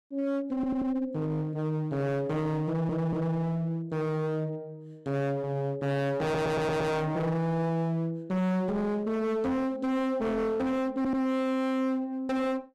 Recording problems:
distorted audio; hard clipping, uneven, signal-to-distortion ratio 5 dB
stutter; 4 times, first at 0.5 s

